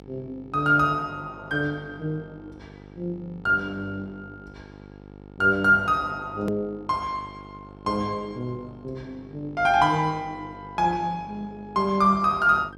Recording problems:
electrical hum; 50 Hz, harmonics up to 1.4 kHz, SNR 21 dB
click at an edit; at 6.5 s

